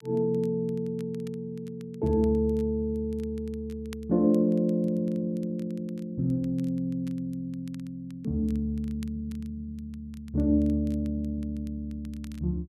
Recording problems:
crackle; vinyl, SNR 29 dB

